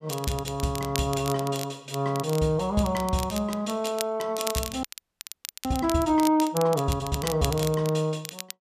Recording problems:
crackle; vinyl, SNR 10 dB
audio freezing; at 5 s for 1 s

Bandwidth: 14.5 kHz